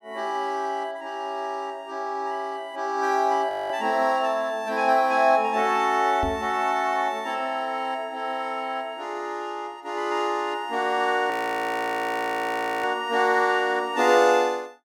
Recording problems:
audio freezing; at 3.5 s and at 11 s for 1.5 s
knock on the microphone; at 6 s; peak -2 dB vs average level

